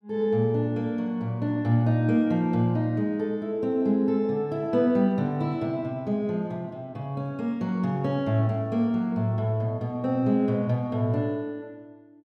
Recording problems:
none

